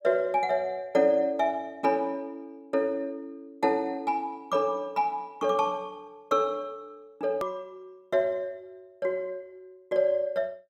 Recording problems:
click at an edit; at 7.5 s

